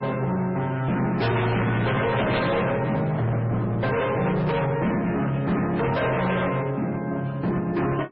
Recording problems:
lossy codec; MP3, then MP3, log-spectral distance 3 dB, nothing above 4.8 kHz
distorted audio; hard clipping, signal-to-distortion ratio 6 dB

